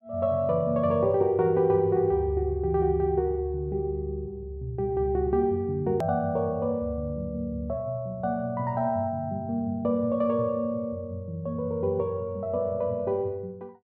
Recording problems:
edit click; at 6 s

